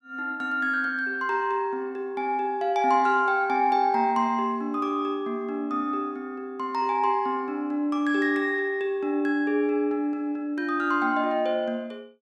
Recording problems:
none

